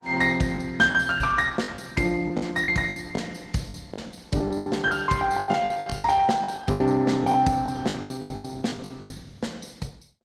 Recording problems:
lossy codec; Opus, log-spectral distance 4 dB, nothing above 17.7 kHz
lost packets; 16% of the sound replaced, filled with the last packet

